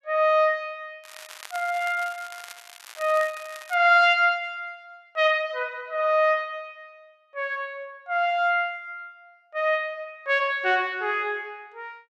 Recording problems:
crackling; from 1 to 3.5 s; loose cable, SNR 19 dB

